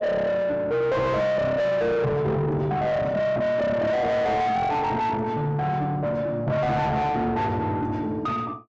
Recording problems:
treble missing; nothing above 8 kHz
distortion; soft clipping, signal-to-distortion ratio 6 dB

